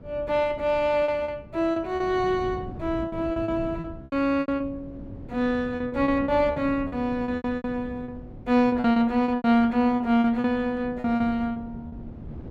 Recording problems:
wind on the microphone; below 250 Hz, SNR 16 dB
packet loss; 13% of the sound replaced, filled with repeated pitch periods

